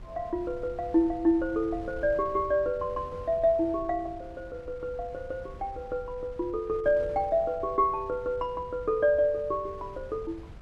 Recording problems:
wind noise; below 130 Hz, SNR 18 dB

